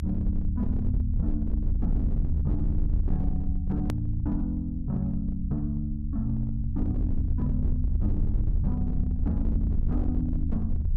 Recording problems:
distorted audio; hard clipping, signal-to-distortion ratio 12 dB
rumble; below 78 Hz, SNR -2 dB
hard cut with a click; at 4 s

